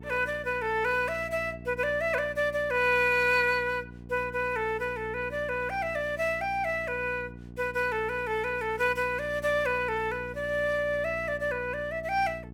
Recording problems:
hum; 60 Hz, harmonics up to 780 Hz, SNR 16 dB

